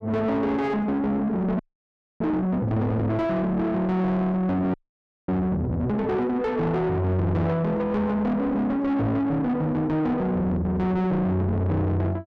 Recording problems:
distortion; soft clipping, signal-to-distortion ratio 7 dB
frozen audio; at 1.5 s for 0.5 s and at 4.5 s for 0.5 s

